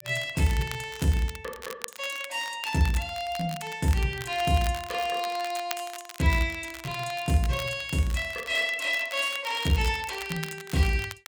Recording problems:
crackle; vinyl, SNR 14 dB

